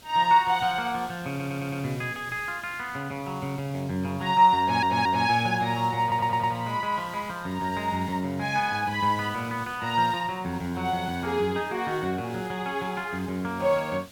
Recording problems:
background hiss; SNR 21 dB
stutter; at 1.5 s, at 4.5 s and at 6 s

